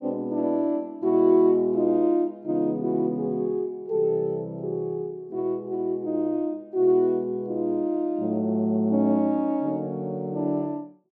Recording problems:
none

